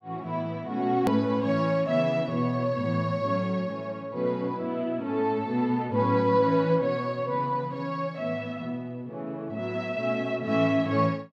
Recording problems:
hard cut with a click; at 1 s

